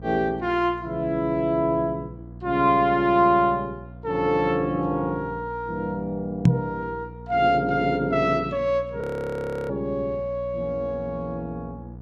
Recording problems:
hum; 60 Hz, harmonics up to 720 Hz, SNR 17 dB
microphone thump; at 6.5 s; peak +10 dB vs average level
frozen audio; at 9 s for 0.5 s

